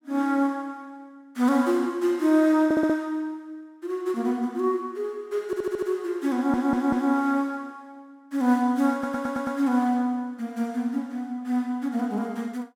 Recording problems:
stutter; 4 times, first at 2.5 s

